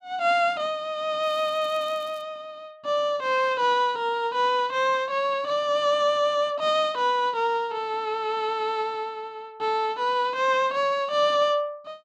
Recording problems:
crackling; from 1 to 2 s; loose cable, SNR 29 dB

